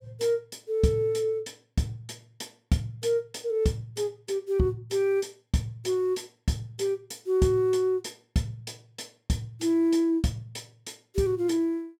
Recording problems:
none

